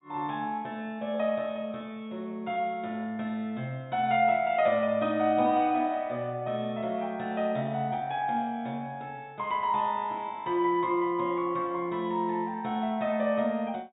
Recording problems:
treble cut off; nothing above 4 kHz

